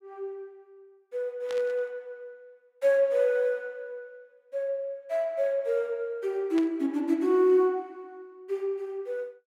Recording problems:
burst of static; at 1.5 s and at 6.5 s; peak -8 dB vs average level

